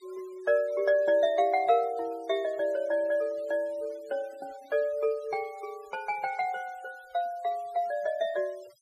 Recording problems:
denoising artefacts; signal-to-artefact ratio 26 dB

